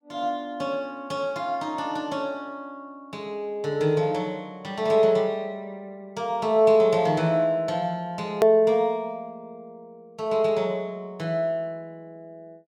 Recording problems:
hard cut with a click; at 8.5 s

